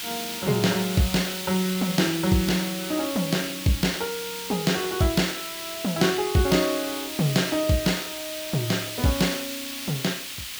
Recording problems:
hiss; SNR 6 dB

